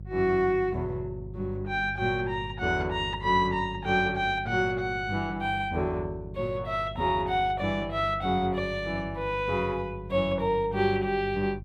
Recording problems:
hum; 50 Hz, harmonics up to 400 Hz, SNR 13 dB

